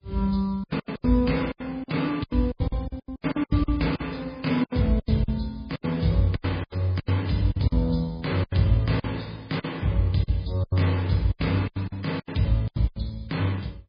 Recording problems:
lossy compression; MP3, log-spectral distance 3 dB, nothing above 11.3 kHz
packet loss; 17% of the sound replaced, filled with silence

